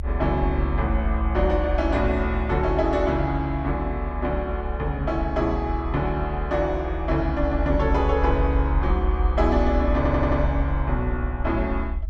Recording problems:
rumble; below 68 Hz, SNR 2 dB
audio stuttering; at 10 s

